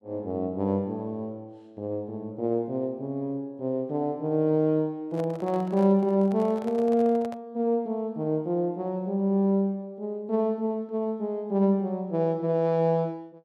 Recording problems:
microphone handling noise; from 5 to 7.5 s; peak -10 dB vs average level

